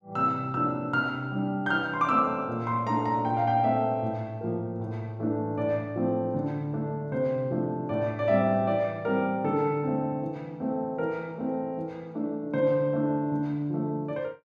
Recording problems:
none

